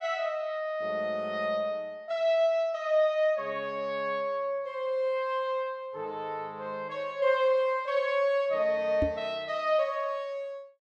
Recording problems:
microphone thump; at 9 s; peak +2 dB vs average level

